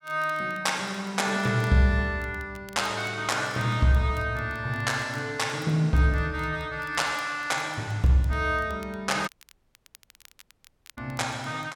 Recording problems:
crackle; vinyl, SNR 27 dB
dropout; at 9.5 s for 1.5 s

